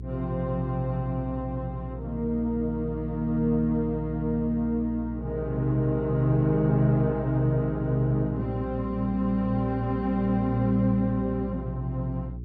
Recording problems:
mains hum; 60 Hz, harmonics up to 420 Hz, SNR 10 dB

